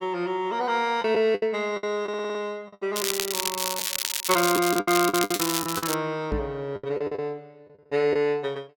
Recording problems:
lost packets; 10% of the sound replaced, filled with the last packet
stutter; at 2 s
crackling; from 3 to 6 s; loose cable, SNR 1 dB
knock on the microphone; at 6.5 s; peak -1 dB vs average level

